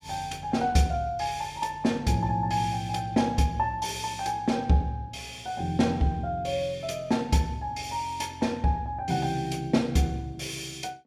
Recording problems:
none

